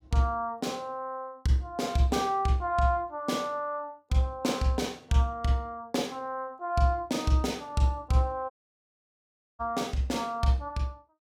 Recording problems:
dropout; at 8.5 s for 1 s

